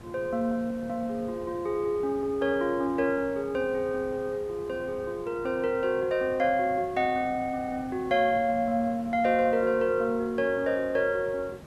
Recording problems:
hiss; slope -7 dB per octave, SNR 19 dB

